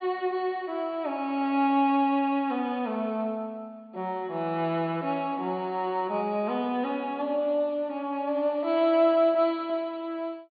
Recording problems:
low-pass filter; nothing above 4.7 kHz

